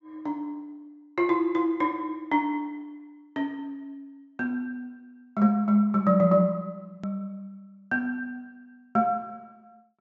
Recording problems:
treble missing; nothing above 8 kHz
click at an edit; at 7 s

